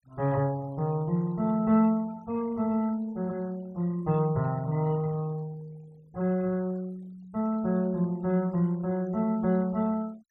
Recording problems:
noise reduction artefacts; signal-to-artefact ratio 27 dB

